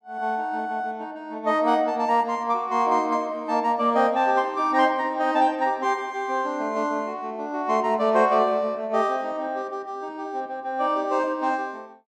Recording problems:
none

